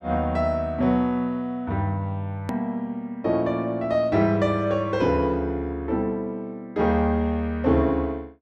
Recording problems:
edit click; at 2.5 s

